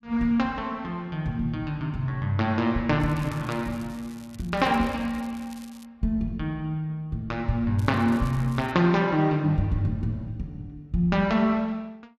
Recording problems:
crackle; from 3 to 6 s and at 8 s; loose cable, SNR 24 dB

